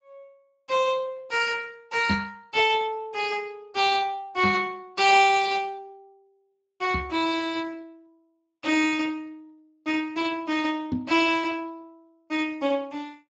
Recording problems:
lossy compression; Speex, log-spectral distance 4 dB, nothing above 7.3 kHz
microphone bump; 4 times, first at 2 s; peak +2 dB vs average level

